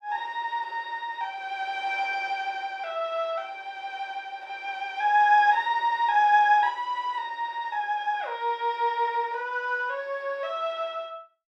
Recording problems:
none

